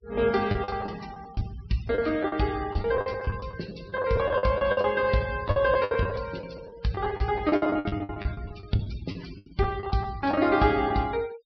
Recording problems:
treble cut off; nothing above 5.5 kHz
noise reduction artefacts; signal-to-artefact ratio 21 dB
lost packets; 16% of the sound replaced, filled with the last packet

